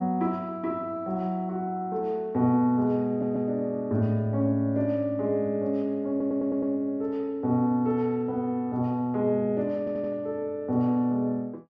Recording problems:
stutter; at 3 s, at 6 s and at 10 s

